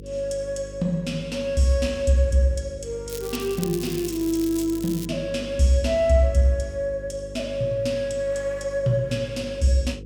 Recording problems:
hum; 50 Hz, harmonics up to 500 Hz, SNR 16 dB
crackle; from 3 to 5 s; loose cable, SNR 13 dB

